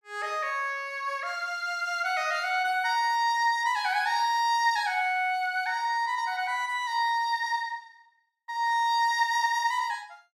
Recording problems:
none

